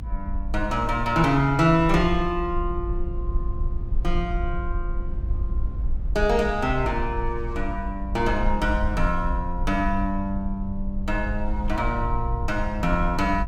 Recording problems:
low-frequency rumble; below 54 Hz, strongest tone 22 Hz, SNR 5 dB

